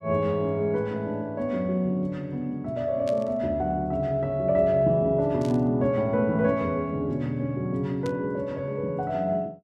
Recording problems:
burst of static; at 3 s, at 5.5 s and at 8 s; peak -12 dB vs average level

